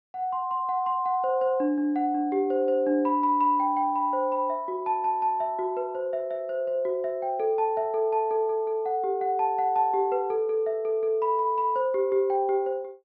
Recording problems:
low-pass filter; nothing above 5.5 kHz

